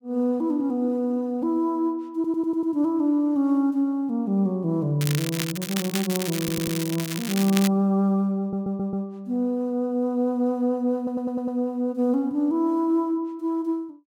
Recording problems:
audio stuttering; 4 times, first at 2 s
crackle; from 5 to 7.5 s; loose cable, SNR 7 dB

